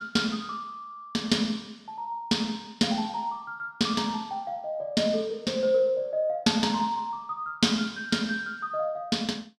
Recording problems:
none

